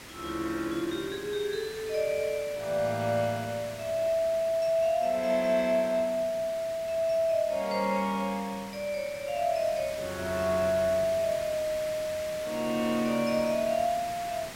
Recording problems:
background hiss; slope -2 dB per octave, SNR 14 dB

